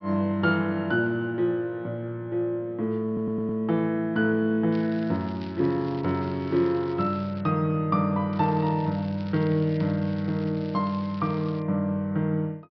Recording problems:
low-pass filter; nothing above 5.5 kHz
audio stuttering; at 3 s
crackle; from 4.5 to 7.5 s and from 8.5 to 12 s; loose cable, SNR 24 dB

